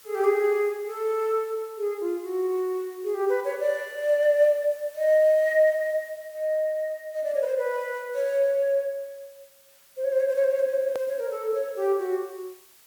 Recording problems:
background hiss; slope +1 dB per octave, SNR 26 dB
click at an edit; at 11 s

